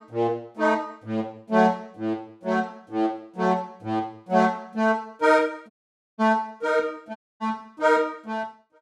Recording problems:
audio cutting out; at 5.5 s and at 7 s

